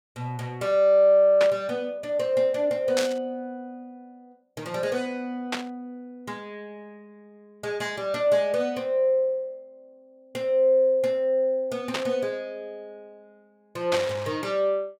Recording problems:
burst of static; 5 times, first at 1.5 s; peak 0 dB vs average level

